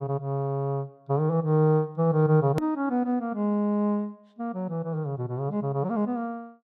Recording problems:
hard cut with a click; at 2.5 s

